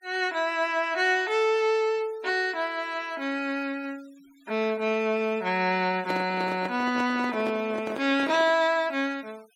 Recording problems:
denoising artefacts; signal-to-artefact ratio 24 dB
microphone handling noise; from 6 to 8.5 s; peak -4 dB vs average level

